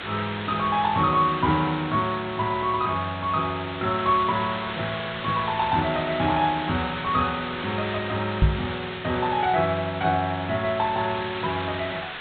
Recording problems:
low-pass filter; nothing above 4 kHz
hiss; SNR 9 dB
microphone bump; at 8.5 s; peak +8 dB vs average level

